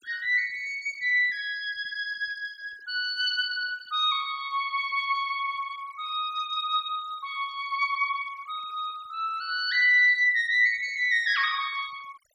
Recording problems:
noise reduction artefacts; signal-to-artefact ratio 25 dB

